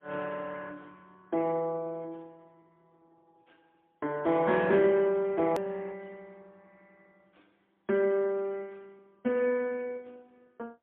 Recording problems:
telephone audio; 220 Hz to 2.8 kHz, AMR-NB, then MP3
hard cut with a click; at 5.5 s

